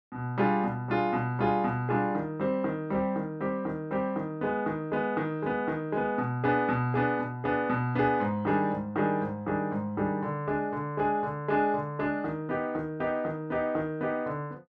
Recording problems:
none

